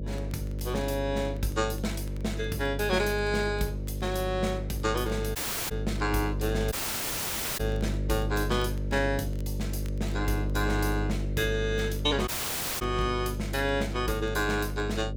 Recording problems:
hum; 50 Hz, harmonics up to 600 Hz, SNR 3 dB
crackling; vinyl, SNR 28 dB
dropout; at 5.5 s, at 6.5 s for 1 s and at 12 s for 0.5 s

